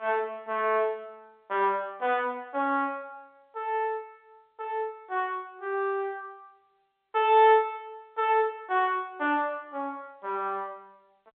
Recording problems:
telephone audio; 320 Hz to 3.7 kHz, G.711

